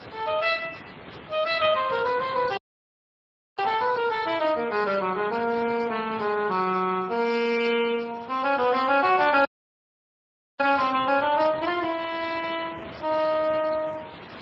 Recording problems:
codec artefacts; MP3, then Speex, log-spectral distance 13 dB
hiss; SNR 17 dB
dropout; at 2.5 s for 1 s and at 9.5 s for 1 s
static burst; 4 times, first at 4 s; peak -16 dB vs average level

